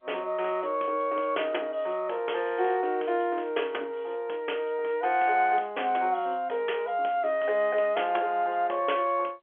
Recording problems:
telephone audio; 320 Hz to 3.4 kHz, G.711

